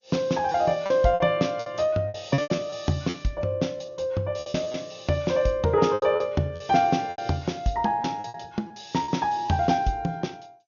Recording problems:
lossy codec; MP2, then MP3, log-spectral distance 4 dB, nothing above 6.7 kHz
packet loss; 11% of the sound replaced, filled with repeated pitch periods

